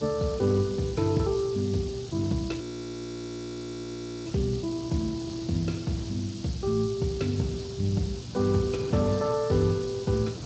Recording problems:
lossy codec; Speex, log-spectral distance 11 dB, nothing above 16 kHz
electrical hum; 60 Hz, harmonics up to 720 Hz, SNR 16 dB
background hiss; SNR 16 dB
wind noise; below 340 Hz, SNR 16 dB
frozen audio; at 2.5 s for 1.5 s

